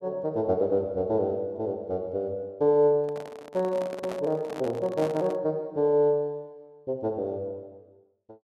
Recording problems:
microphone handling noise; from 3 to 5.5 s; peak -5 dB vs average level

